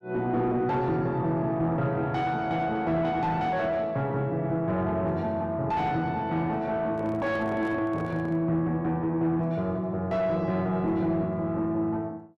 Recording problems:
distorted audio; soft clipping, signal-to-distortion ratio 11 dB
microphone handling noise; from 7 to 8.5 s; peak -6 dB vs average level

